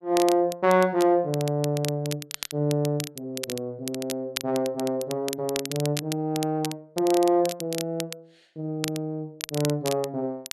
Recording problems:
crackle; vinyl, SNR 10 dB

